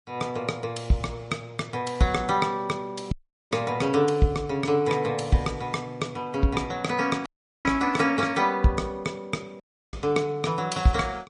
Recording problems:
lossy codec; MP3, log-spectral distance 2 dB, nothing above 10.4 kHz
dropout; at 3 s, at 7.5 s and at 9.5 s

